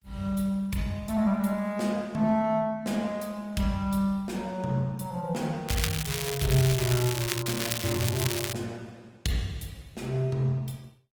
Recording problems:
codec artefacts; Opus, log-spectral distance 4 dB, nothing above 19 kHz
crackling; from 5.5 to 8.5 s; loose cable, SNR 4 dB

